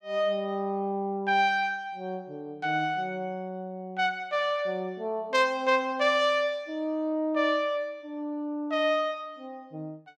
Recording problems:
none

